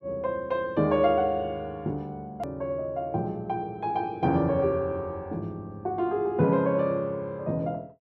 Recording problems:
click at an edit; at 2.5 s

